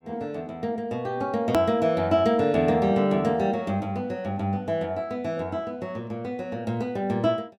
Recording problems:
edit click; at 1.5 s

